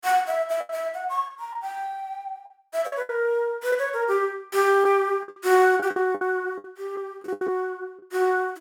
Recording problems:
lost packets; 9% of the sound replaced, filled with the last packet

